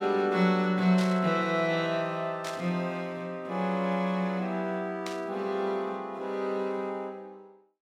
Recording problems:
burst of static; at 1 s, at 2.5 s and at 5 s; peak -5 dB vs average level

